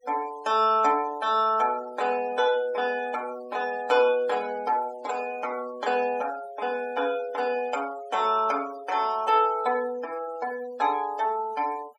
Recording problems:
denoising artefacts; signal-to-artefact ratio 20 dB

